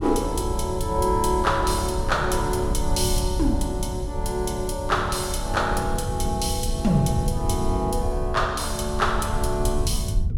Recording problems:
low-frequency rumble; below 94 Hz, SNR 5 dB

